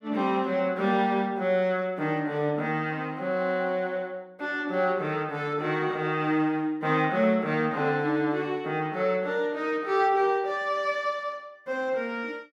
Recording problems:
none

